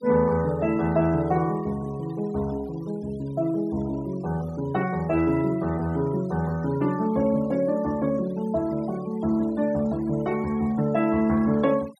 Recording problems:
noise reduction artefacts; signal-to-artefact ratio 22 dB

